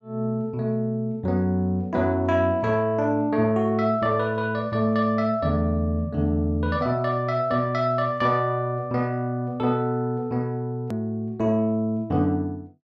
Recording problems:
click at an edit; at 11 s

